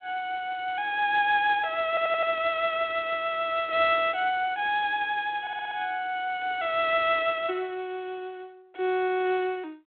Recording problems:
telephone audio; 260 Hz to 3.7 kHz, G.726
stutter; at 2 s and at 5.5 s

